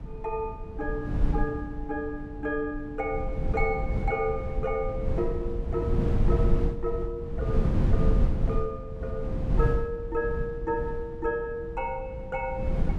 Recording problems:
wind on the microphone; below 130 Hz, SNR -1 dB

